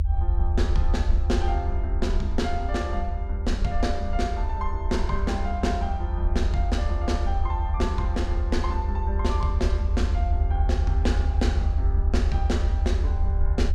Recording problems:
low-frequency rumble; below 78 Hz, SNR -4 dB

